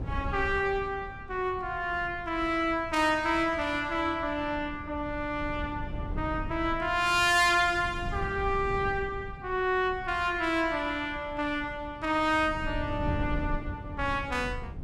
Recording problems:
wind on the microphone; below 140 Hz, SNR 12 dB

